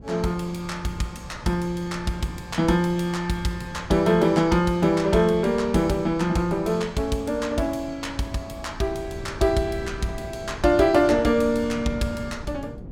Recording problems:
wind on the microphone; below 230 Hz, SNR 17 dB

